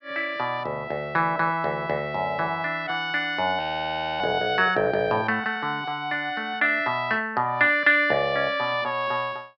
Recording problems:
treble cut off; nothing above 5.5 kHz
audio freezing; at 3.5 s for 0.5 s

